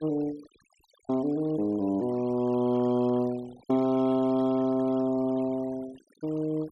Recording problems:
noise reduction artefacts; signal-to-artefact ratio 23 dB

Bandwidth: 12.5 kHz